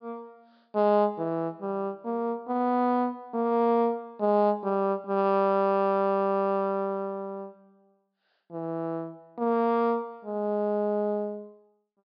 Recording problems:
treble missing; nothing above 5.5 kHz

